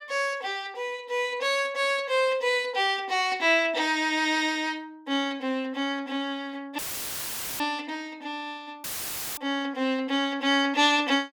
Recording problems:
audio cutting out; at 7 s for 1 s and at 9 s for 0.5 s; filled with static

